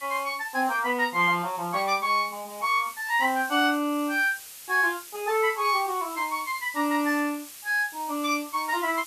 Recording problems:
background hiss; slope +2 dB per octave, SNR 16 dB

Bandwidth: 14 kHz